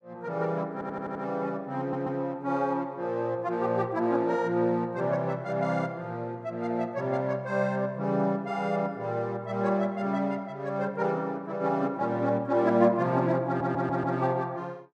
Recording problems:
stutter; at 0.5 s, at 2 s and at 13 s

